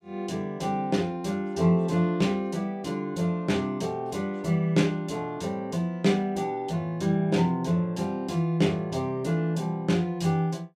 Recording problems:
none

